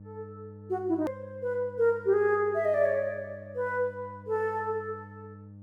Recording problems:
hum; 50 Hz, harmonics up to 600 Hz, SNR 19 dB
edit click; at 1 s

